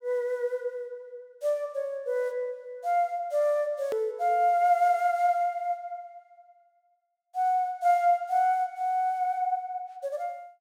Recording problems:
click at an edit; at 4 s

